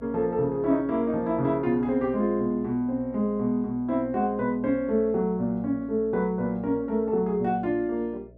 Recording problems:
hum; 60 Hz, harmonics up to 660 Hz, SNR 23 dB

